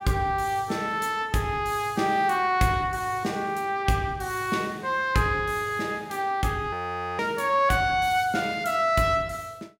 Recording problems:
frozen audio; at 6.5 s

